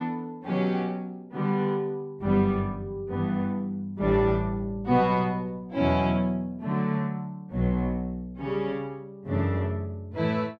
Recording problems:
none

